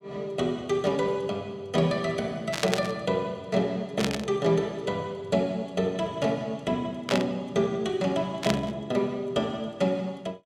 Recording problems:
burst of static; 4 times, first at 2.5 s; peak +4 dB vs average level

